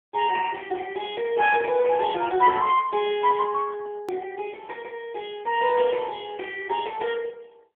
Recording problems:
telephone audio; 320 Hz to 3.4 kHz, AMR-NB
click at an edit; at 4 s

